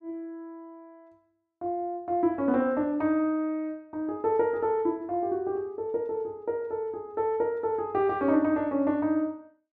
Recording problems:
none

